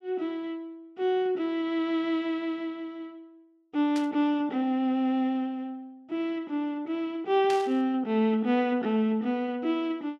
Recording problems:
burst of static; at 4 s and at 7.5 s; peak -6 dB vs average level

